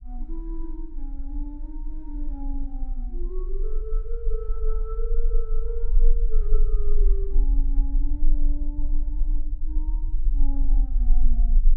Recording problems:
rumble; below 34 Hz, strongest tone 18 Hz, SNR -13 dB

